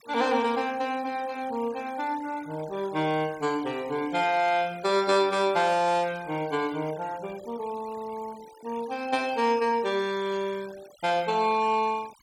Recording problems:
denoising artefacts; signal-to-artefact ratio 20 dB

